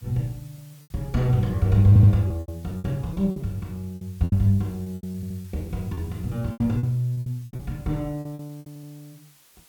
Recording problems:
background hiss; slope 0 dB per octave, SNR 28 dB
lost packets; 14% of the sound replaced, filled with repeated pitch periods
audio stuttering; at 2 s, at 5 s and at 8.5 s

